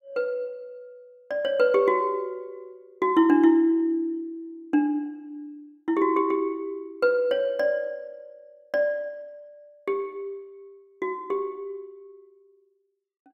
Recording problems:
none

